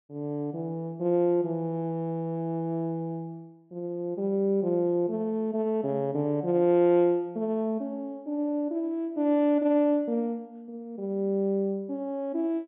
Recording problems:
treble missing; nothing above 3.6 kHz

